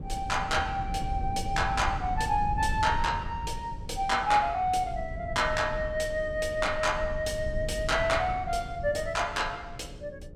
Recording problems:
electrical hum; 60 Hz, harmonics up to 600 Hz, SNR 23 dB
low-frequency rumble; below 110 Hz, SNR 10 dB

